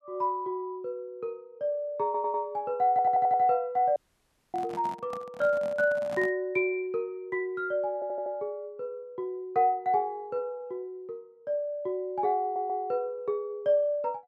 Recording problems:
stutter; 4 times, first at 2 s
audio cutting out; at 4 s for 0.5 s
microphone handling noise; from 4.5 to 6.5 s; peak -8 dB vs average level

